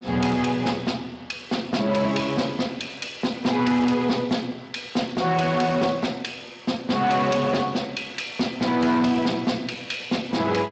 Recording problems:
codec artefacts; Speex, log-spectral distance 6 dB, nothing above 7.6 kHz
distortion; hard clipping, signal-to-distortion ratio 10 dB

